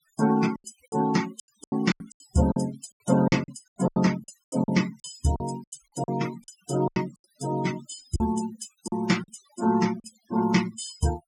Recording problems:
denoising artefacts; signal-to-artefact ratio 13 dB
lost packets; 14% of the sound replaced, filled with silence

